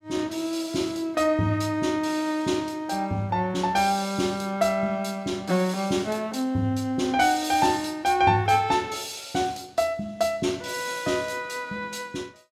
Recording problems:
none

